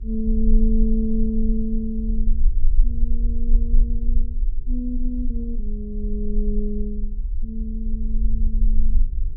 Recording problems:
hum; 60 Hz, harmonics up to 420 Hz, SNR 28 dB
rumble; below 38 Hz, strongest tone 22 Hz, SNR -3 dB

